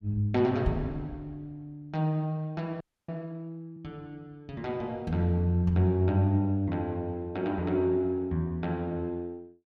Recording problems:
audio freezing; at 3 s

